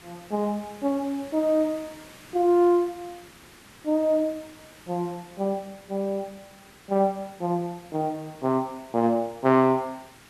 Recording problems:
hiss; SNR 23 dB

